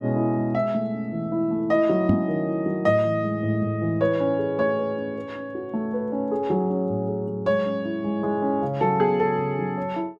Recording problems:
microphone thump; at 2 s; peak +6 dB vs average level

